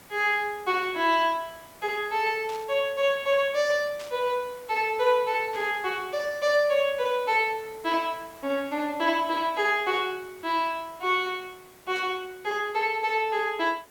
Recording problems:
hiss; slope -4 dB per octave, SNR 23 dB
burst of static; 5 times, first at 2.5 s; peak -12 dB vs average level

